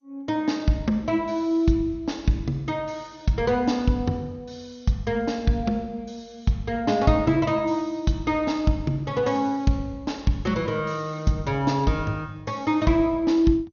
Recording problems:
codec artefacts; MP2, log-spectral distance 2 dB, nothing above 6.7 kHz

